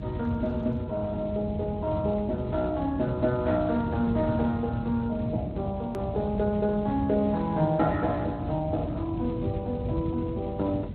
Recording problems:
lossy codec; Opus, then Speex, log-spectral distance 2 dB
low-frequency rumble; below 180 Hz, SNR 6 dB
click at an edit; at 6 s

